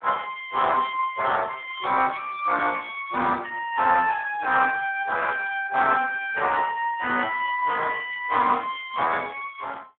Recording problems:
phone line; 260 Hz to 3.9 kHz, Speex

